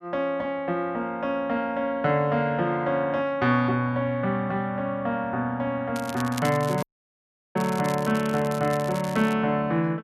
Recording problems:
crackle; from 6 to 9.5 s; loose cable, SNR 16 dB
audio cutting out; at 7 s for 0.5 s

